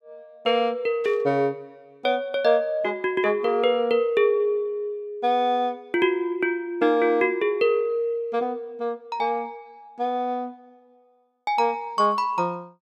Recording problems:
static burst; at 1 s; peak -15 dB vs average level

